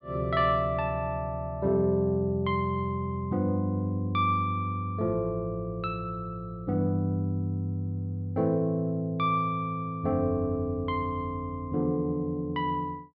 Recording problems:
treble cut off; nothing above 5.2 kHz

